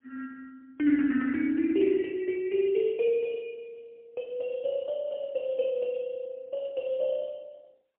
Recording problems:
phone line; 260 Hz to 3.1 kHz, AMR-NB, then MP3

